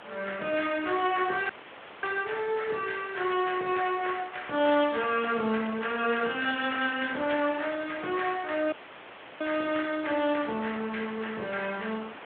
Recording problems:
telephone audio; 280 Hz to 3.4 kHz, Speex
background hiss; SNR 16 dB
audio cutting out; at 1.5 s for 0.5 s and at 8.5 s for 0.5 s

